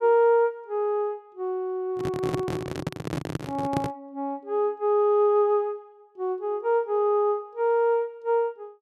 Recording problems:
handling noise; from 2 to 4 s; peak +1 dB vs average level

